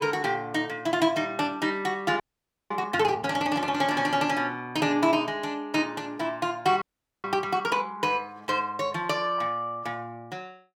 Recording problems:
frozen audio; at 2 s for 0.5 s and at 7 s

